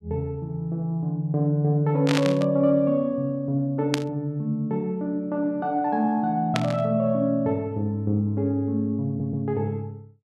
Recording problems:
burst of static; at 2 s, at 4 s and at 6.5 s; peak +2 dB vs average level
audio stuttering; at 9 s

